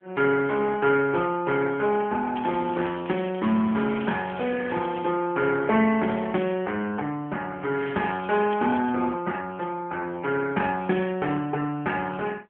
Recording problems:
phone line; 150 Hz to 3.2 kHz, AMR-NB
crackle; from 2.5 to 5 s and from 8 to 9 s; loose cable, SNR 18 dB

